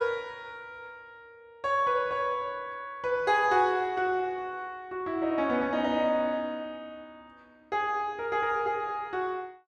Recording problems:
none

